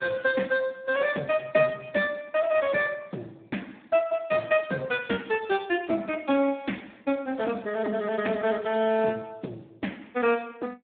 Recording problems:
phone line; 170 Hz to 3.6 kHz, Speex

